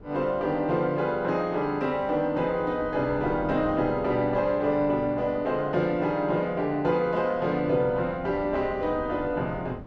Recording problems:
wind noise; below 360 Hz, SNR 18 dB

